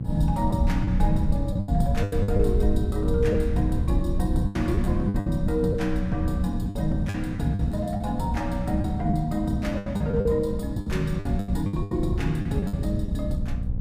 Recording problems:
hum; 60 Hz, harmonics up to 540 Hz, SNR 8 dB
rumble; below 88 Hz, SNR 4 dB
packet loss; 10% of the sound replaced, filled with the last packet

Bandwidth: 15 kHz